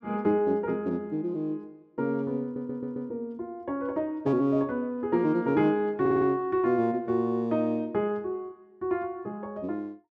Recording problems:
stutter; at 2.5 s and at 6 s

